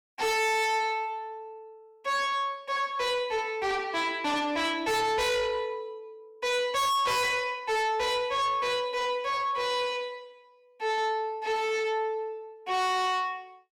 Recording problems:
distorted audio; soft clipping, signal-to-distortion ratio 6 dB

